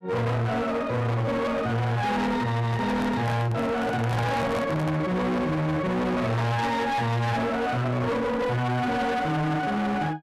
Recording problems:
distortion; hard clipping, uneven, signal-to-distortion ratio 6 dB
microphone handling noise; from 2.5 to 5 s; peak +1 dB vs average level

